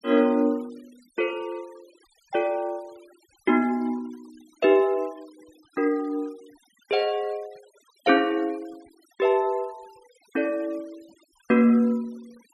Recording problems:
denoising artefacts; signal-to-artefact ratio 28 dB

